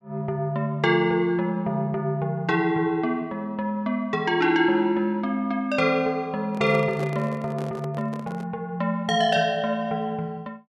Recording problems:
handling noise; from 6.5 to 8.5 s; peak -7 dB vs average level

